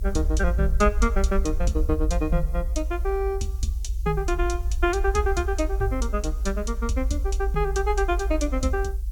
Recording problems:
hiss; SNR 27 dB
rumble; below 56 Hz, SNR 1 dB

